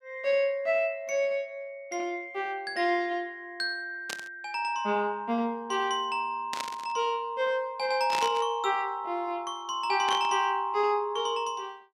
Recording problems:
static burst; 4 times, first at 4 s; peak 0 dB vs average level

